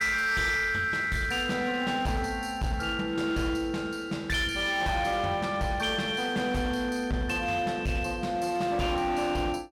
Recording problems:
distorted audio; hard clipping, signal-to-distortion ratio 11 dB

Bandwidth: 17 kHz